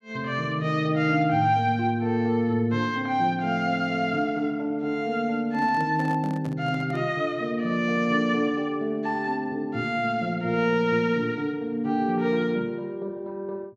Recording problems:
handling noise; from 5.5 to 7 s; peak -10 dB vs average level

